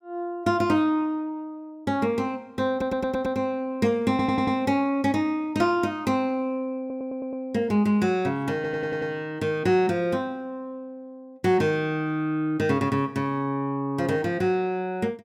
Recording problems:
stutter; 4 times, first at 2.5 s

